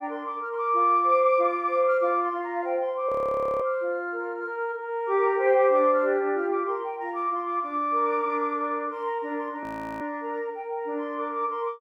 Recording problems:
frozen audio; at 3 s for 0.5 s and at 9.5 s

